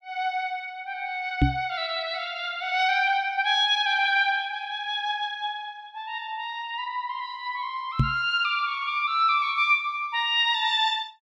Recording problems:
microphone bump; at 1.5 s and at 8 s; peak +7 dB vs average level

